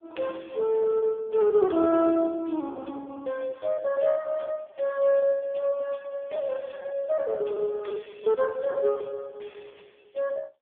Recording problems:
telephone audio; 280 Hz to 3.4 kHz, AMR-NB
lost packets; 15% of the sound replaced, filled with repeated pitch periods

